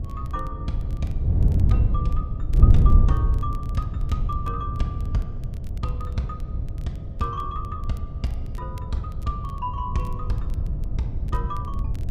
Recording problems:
hum; 60 Hz, harmonics up to 720 Hz, SNR 20 dB
wind noise; below 98 Hz, SNR -6 dB
crackling; vinyl, SNR 25 dB

